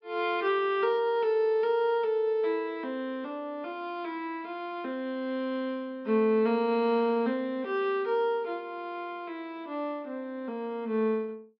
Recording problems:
treble missing; nothing above 5.5 kHz

